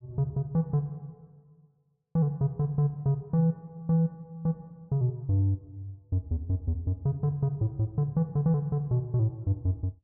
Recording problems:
none

